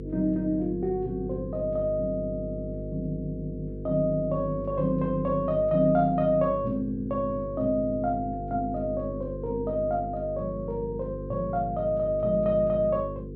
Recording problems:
hum; 50 Hz, harmonics up to 500 Hz, SNR 9 dB

